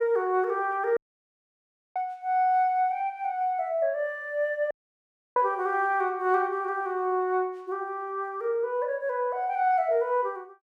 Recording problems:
audio cutting out; at 1 s for 1 s and at 4.5 s for 0.5 s

